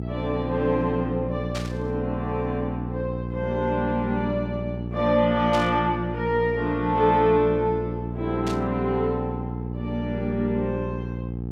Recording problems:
electrical hum; 60 Hz, harmonics up to 540 Hz, SNR 6 dB
burst of static; at 1.5 s, at 5.5 s and at 8.5 s; peak -5 dB vs average level

